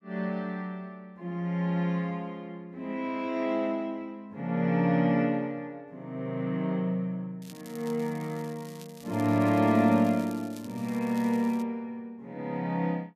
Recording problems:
crackling; from 7.5 to 12 s; loose cable, SNR 22 dB

